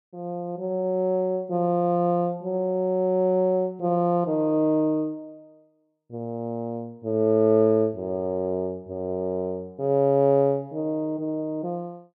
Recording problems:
none

